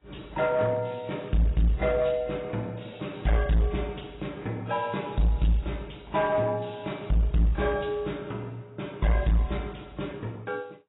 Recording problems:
lossy codec; AAC, log-spectral distance 5 dB, nothing above 3.8 kHz
distortion; hard clipping, uneven, signal-to-distortion ratio 9 dB

